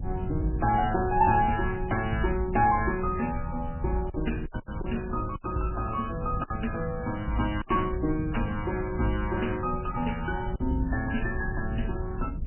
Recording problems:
codec artefacts; MP3, log-spectral distance 4 dB, nothing above 2.8 kHz
hum; 60 Hz, harmonics up to 660 Hz, SNR 17 dB
rumble; below 110 Hz, SNR 9 dB
wind noise; below 160 Hz, SNR 12 dB
packet loss; 4% of the sound replaced, filled with silence

